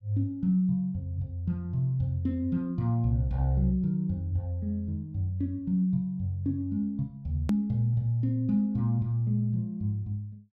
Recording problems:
edit click; at 7.5 s

